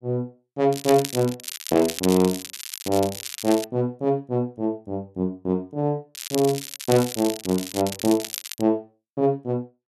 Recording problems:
crackle; from 0.5 to 3.5 s and from 6 to 8.5 s; loose cable, SNR 9 dB

